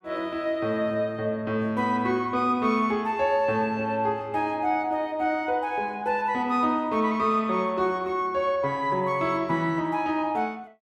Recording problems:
none

